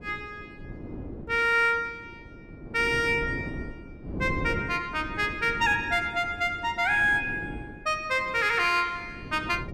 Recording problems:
wind on the microphone; below 340 Hz, SNR 14 dB

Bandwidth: 15 kHz